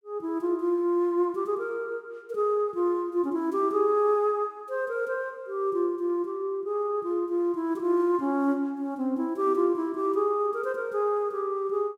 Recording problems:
none

